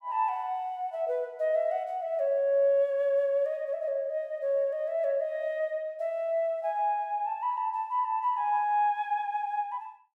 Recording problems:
none

